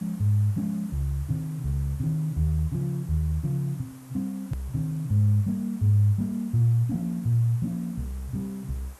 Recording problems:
background hiss; SNR 25 dB
hard cut with a click; at 4.5 s

